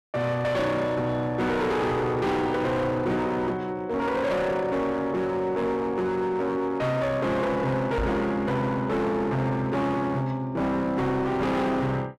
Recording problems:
distortion; hard clipping, uneven, signal-to-distortion ratio 8 dB
microphone thump; at 8 s; peak +1 dB vs average level

